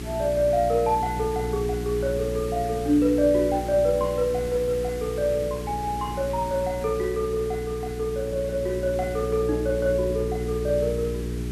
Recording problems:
hum; 60 Hz, harmonics up to 420 Hz, SNR 8 dB
background hiss; SNR 15 dB

